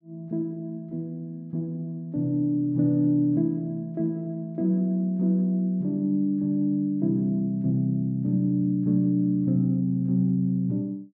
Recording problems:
none

